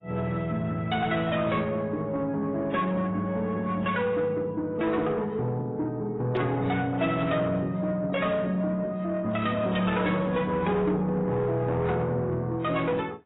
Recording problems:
codec artefacts; AAC, then AAC, log-spectral distance 2 dB, nothing above 3.8 kHz
distortion; soft clipping, signal-to-distortion ratio 12 dB

